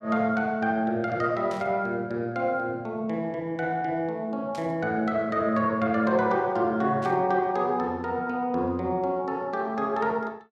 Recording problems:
static burst; at 1.5 s, at 4.5 s and at 7 s; peak -13 dB vs average level

